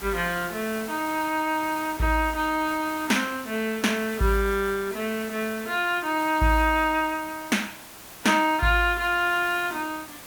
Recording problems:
background hiss; slope -2 dB per octave, SNR 15 dB

